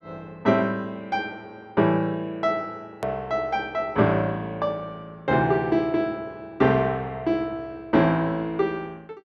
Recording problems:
edit click; at 3 s

